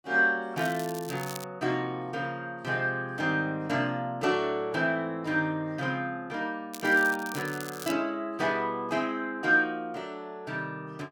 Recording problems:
crackle; at 0.5 s and from 6.5 to 8 s; loose cable, SNR 14 dB

